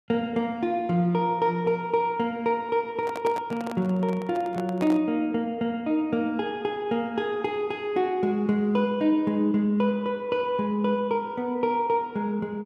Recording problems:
handling noise; from 3 to 5 s; peak -5 dB vs average level

